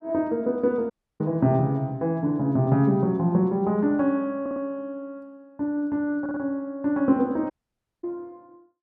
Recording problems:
dropout; at 1 s and at 7.5 s for 0.5 s
stutter; at 4.5 s and at 6 s

